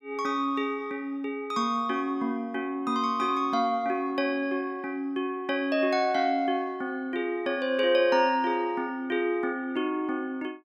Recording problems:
none

